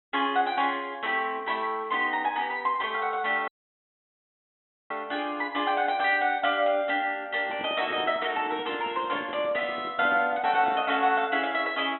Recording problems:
treble missing; nothing above 3.9 kHz
audio cutting out; at 3.5 s for 1.5 s
handling noise; from 7.5 to 11 s; peak -10 dB vs average level

